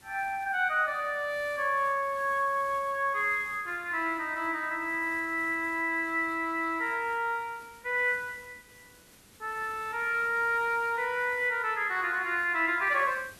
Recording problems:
background hiss; slope -2 dB per octave, SNR 25 dB

